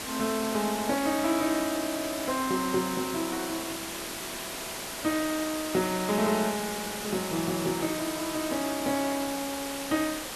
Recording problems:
background hiss; slope -2 dB per octave, SNR 5 dB

